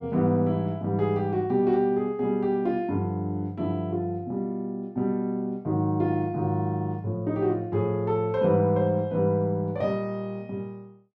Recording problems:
none

